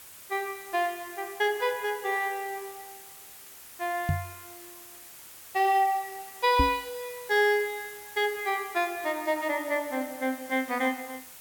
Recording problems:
hiss; slope 0 dB per octave, SNR 16 dB
microphone thump; at 4 s and at 6.5 s; peak +5 dB vs average level

